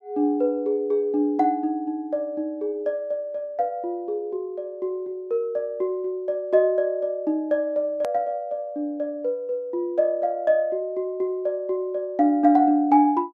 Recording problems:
edit click; at 8 s

